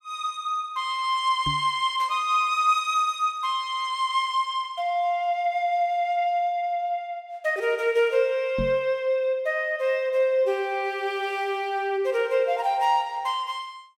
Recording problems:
knock on the microphone; at 1.5 s and at 8.5 s; peak -2 dB vs average level

